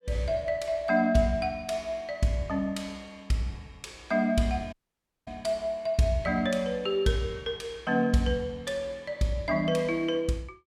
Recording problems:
dropout; at 4.5 s for 0.5 s

